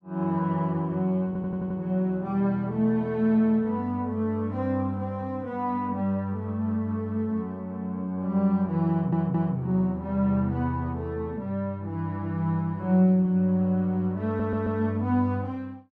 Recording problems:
stutter; at 1.5 s, at 9 s and at 14 s

